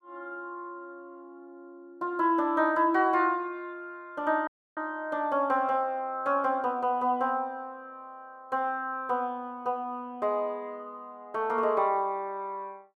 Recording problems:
dropout; at 4.5 s

